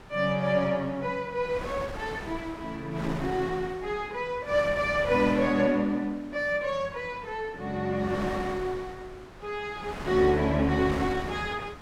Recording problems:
wind noise; below 1.3 kHz, SNR 12 dB

